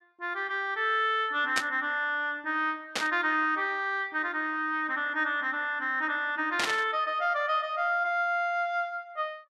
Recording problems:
static burst; at 1.5 s, at 3 s and at 6.5 s; peak +3 dB vs average level

